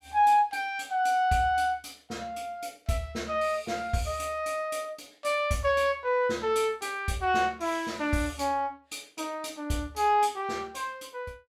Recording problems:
none

